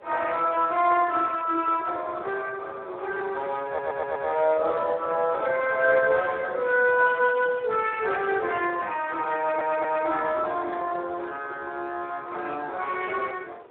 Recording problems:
phone line; 340 Hz to 3 kHz, Speex
wind on the microphone; below 820 Hz, SNR 21 dB
audio stuttering; at 3.5 s and at 9.5 s

